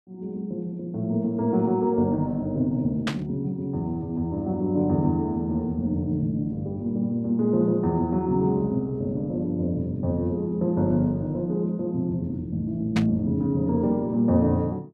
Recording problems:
static burst; at 3 s and at 13 s; peak 0 dB vs average level

